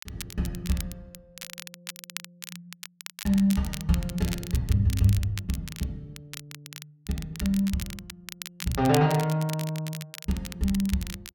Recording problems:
crackle; vinyl, SNR 12 dB

